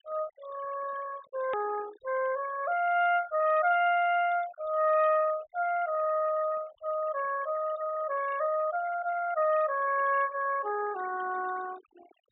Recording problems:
treble cut off; nothing above 4 kHz
denoising artefacts; signal-to-artefact ratio 17 dB
click at an edit; at 1.5 s

